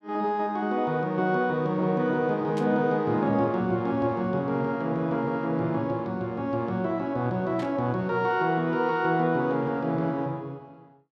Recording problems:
static burst; at 2.5 s and at 7.5 s; peak -12 dB vs average level

